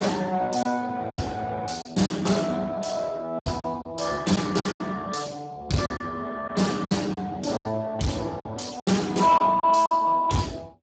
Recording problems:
lossy compression; Speex, log-spectral distance 5 dB, nothing above 7.8 kHz
distortion; soft clipping, signal-to-distortion ratio 11 dB
packet loss; 9% of the sound replaced, filled with silence

